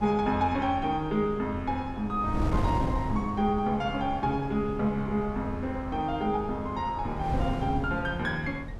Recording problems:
wind noise; below 240 Hz, SNR 7 dB

